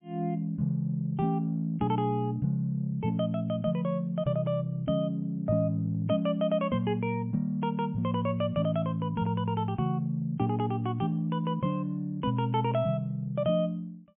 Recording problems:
treble missing; nothing above 3.2 kHz

